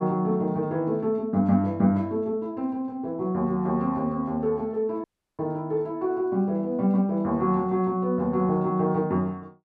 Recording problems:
dropout; at 5 s

